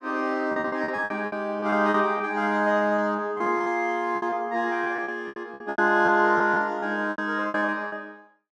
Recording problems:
packet loss; 15% of the sound replaced, filled with repeated pitch periods

